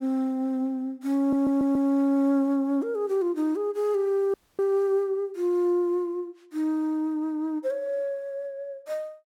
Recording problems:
audio stuttering; at 1 s
audio cutting out; at 4.5 s

